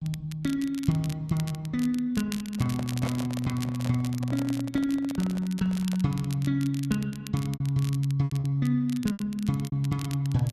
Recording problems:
crackle; vinyl, SNR 16 dB
lost packets; 5% of the sound replaced, filled with repeated pitch periods
microphone handling noise; from 2.5 to 6 s; peak -4 dB vs average level

